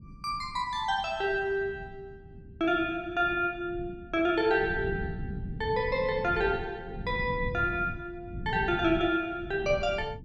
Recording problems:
rumble; below 180 Hz, SNR 12 dB

